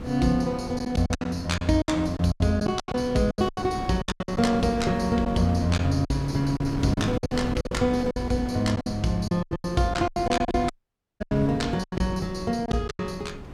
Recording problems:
wind noise; below 400 Hz, SNR 10 dB
lost packets; 15% of the sound replaced, filled with silence
audio cutting out; at 11 s for 0.5 s

